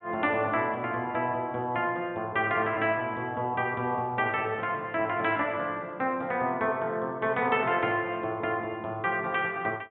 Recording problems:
low-pass filter; nothing above 3.7 kHz

